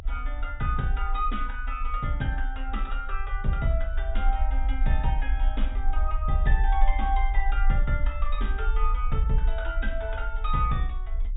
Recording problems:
treble missing; nothing above 4 kHz
low-frequency rumble; below 46 Hz, strongest tone 30 Hz, SNR -1 dB

